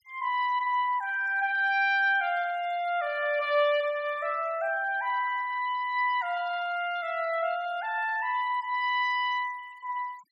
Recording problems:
noise reduction artefacts; signal-to-artefact ratio 23 dB

